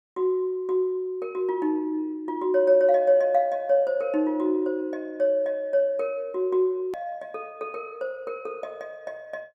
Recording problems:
click at an edit; at 7 s

